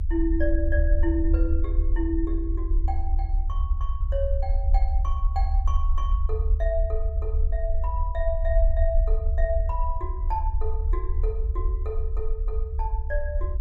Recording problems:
low-frequency rumble; below 68 Hz, SNR -6 dB

